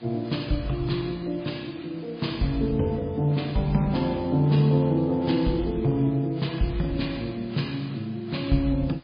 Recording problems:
codec artefacts; MP3, log-spectral distance 6 dB, nothing above 4.4 kHz
background hiss; SNR 27 dB

